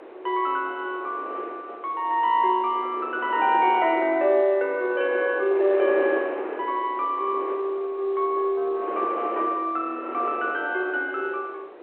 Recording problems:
phone line; 300 Hz to 3.3 kHz, G.711
wind on the microphone; below 760 Hz, SNR 11 dB

